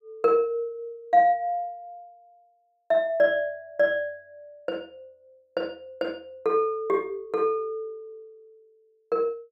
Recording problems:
none

